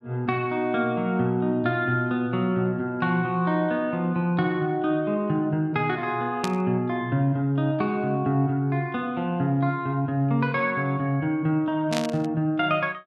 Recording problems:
static burst; at 6.5 s and at 12 s; peak -1 dB vs average level

